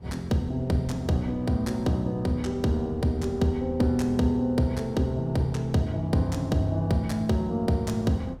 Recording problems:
wind on the microphone; below 190 Hz, SNR 20 dB

